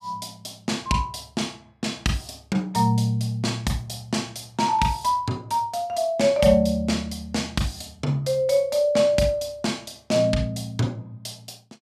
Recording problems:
none

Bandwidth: 14.5 kHz